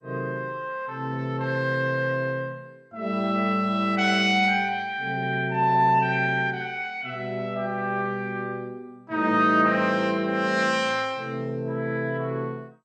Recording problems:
lossy compression; MP2, log-spectral distance 3 dB, nothing above 7.3 kHz

